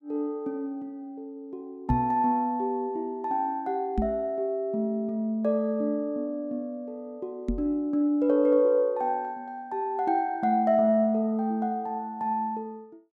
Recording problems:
knock on the microphone; at 2 s, at 4 s and at 7.5 s; peak +4 dB vs average level

